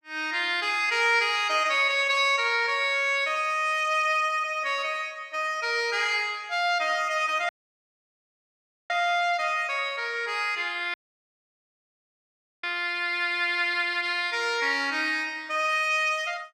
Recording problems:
dropout; at 7.5 s for 1.5 s and at 11 s for 1.5 s

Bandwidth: 15 kHz